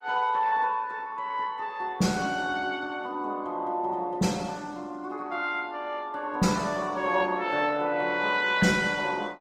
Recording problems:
lossy codec; Opus, log-spectral distance 3 dB, nothing above 18.3 kHz

